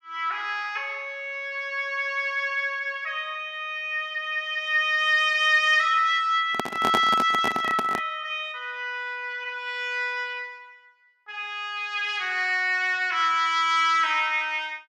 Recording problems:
microphone handling noise; from 6.5 to 8 s; peak +3 dB vs average level

